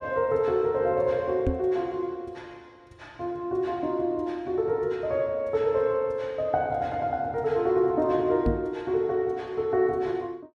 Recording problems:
knock on the microphone; at 1.5 s and at 8.5 s; peak +4 dB vs average level

